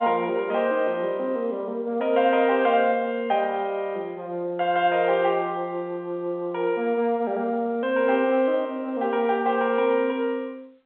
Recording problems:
telephone audio; 300 Hz to 3.6 kHz, G.711

